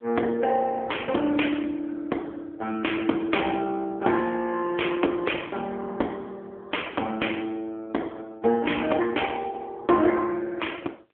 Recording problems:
telephone audio; 280 Hz to 3.3 kHz, AMR-NB

